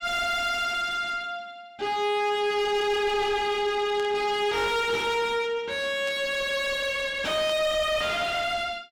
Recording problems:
distorted audio; soft clipping, signal-to-distortion ratio 4 dB
static burst; at 4 s, at 6 s and at 7.5 s; peak -11 dB vs average level

